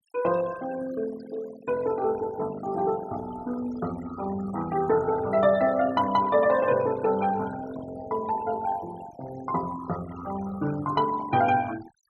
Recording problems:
denoising artefacts; signal-to-artefact ratio 16 dB

